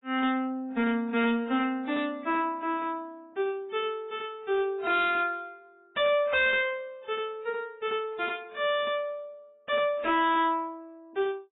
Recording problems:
codec artefacts; AAC, log-spectral distance 2 dB, nothing above 3.8 kHz
distortion; hard clipping, uneven, signal-to-distortion ratio 10 dB

